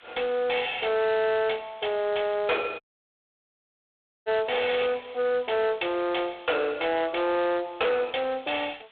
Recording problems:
telephone audio; 320 Hz to 3.6 kHz, G.726
distorted audio; soft clipping, signal-to-distortion ratio 6 dB
background hiss; SNR 26 dB
audio cutting out; at 3 s for 1.5 s

